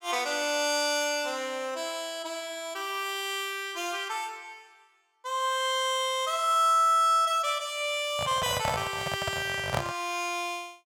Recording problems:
microphone handling noise; from 8 to 10 s; peak +3 dB vs average level

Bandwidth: 17 kHz